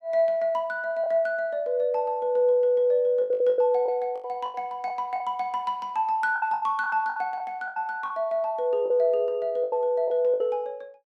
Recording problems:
lost packets; 10% of the sound replaced, filled with the last packet

